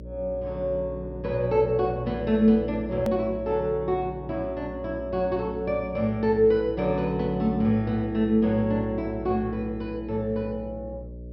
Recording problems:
treble missing; nothing above 5.8 kHz
hum; 60 Hz, harmonics up to 600 Hz, SNR 14 dB
hard cut with a click; at 3 s

